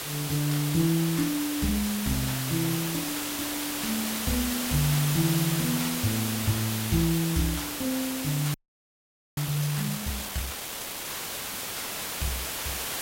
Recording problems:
hiss; slope -1 dB per octave, SNR 2 dB
frozen audio; at 8.5 s for 1 s

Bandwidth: 16 kHz